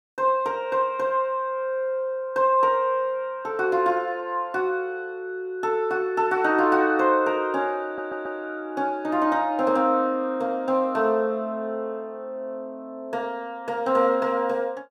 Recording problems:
stutter; at 8 s

